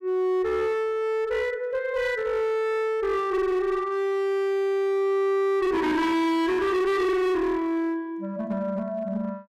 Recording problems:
distortion; hard clipping, uneven, signal-to-distortion ratio 7 dB

